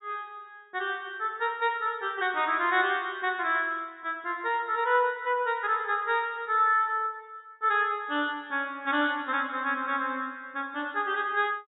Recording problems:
treble cut off; nothing above 4 kHz

